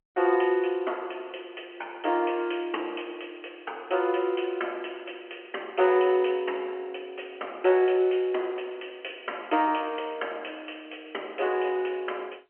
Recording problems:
telephone audio; 300 Hz to 3.2 kHz, G.711

